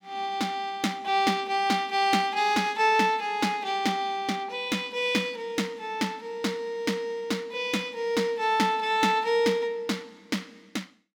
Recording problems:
none

